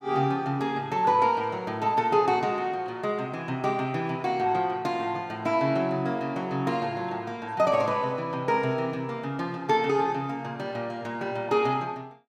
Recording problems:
none

